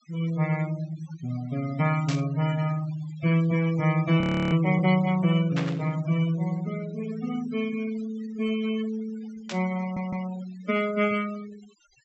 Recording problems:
treble missing; nothing above 7.8 kHz
noise reduction artefacts; signal-to-artefact ratio 15 dB
burst of static; at 2 s, at 5.5 s and at 9.5 s; peak -3 dB vs average level
frozen audio; at 4 s
stutter; at 10 s

